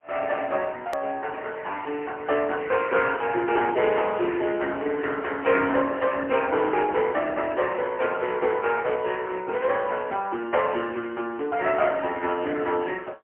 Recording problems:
phone line; 280 Hz to 3 kHz, AMR-NB, then MP3
edit click; at 1 s

